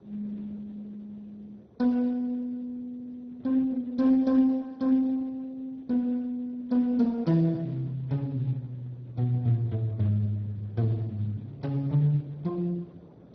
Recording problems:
lossy compression; Speex, then MP2, log-spectral distance 2 dB, nothing above 5.8 kHz
wind on the microphone; below 450 Hz, SNR 25 dB

